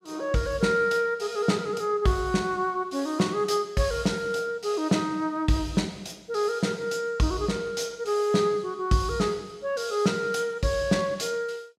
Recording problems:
none

